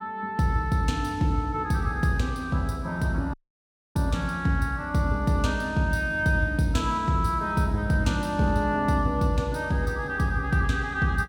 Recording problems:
audio cutting out; at 3.5 s for 0.5 s

